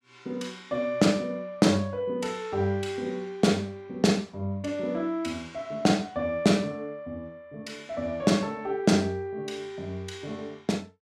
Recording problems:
none

